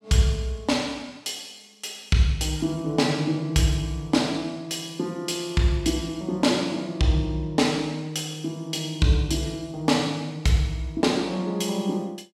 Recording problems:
none

